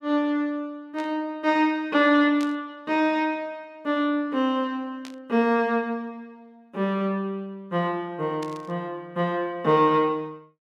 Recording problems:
static burst; 4 times, first at 1 s; peak -12 dB vs average level

